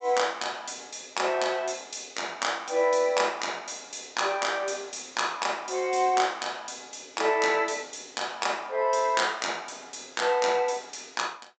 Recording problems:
treble cut off; nothing above 8 kHz

